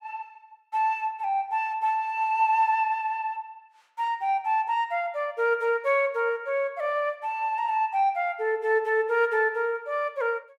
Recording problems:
none

